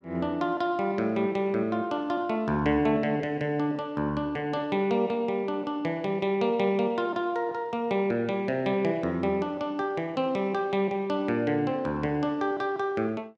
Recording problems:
none

